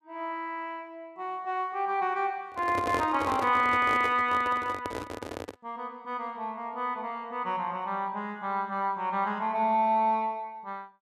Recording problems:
handling noise; from 2.5 to 5.5 s; peak 0 dB vs average level

